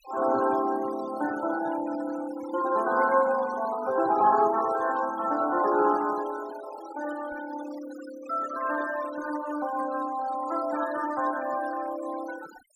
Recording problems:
denoising artefacts; signal-to-artefact ratio 15 dB

